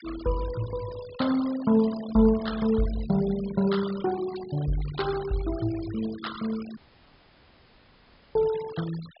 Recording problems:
low-pass filter; nothing above 5.5 kHz
denoising artefacts; signal-to-artefact ratio 16 dB
dropout; at 7 s for 1.5 s

